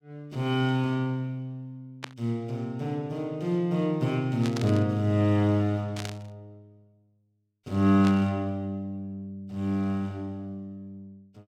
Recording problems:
burst of static; 4 times, first at 2 s; peak -4 dB vs average level

